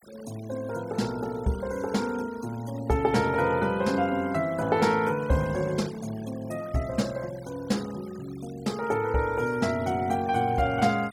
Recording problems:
denoising artefacts; signal-to-artefact ratio 21 dB

